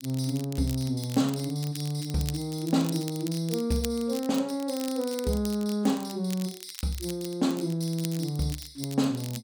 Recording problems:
crackle; vinyl, SNR 13 dB

